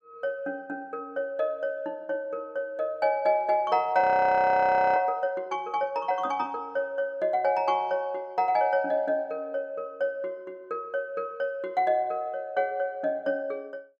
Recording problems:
audio freezing; at 4 s for 1 s

